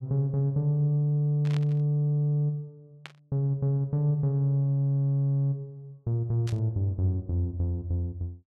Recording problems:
burst of static; at 1.5 s, at 3 s and at 6.5 s; peak -10 dB vs average level

